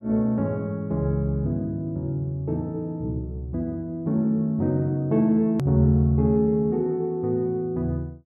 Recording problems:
edit click; at 5.5 s

